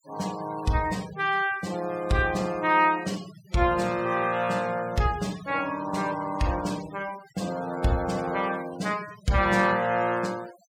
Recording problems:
denoising artefacts; signal-to-artefact ratio 18 dB

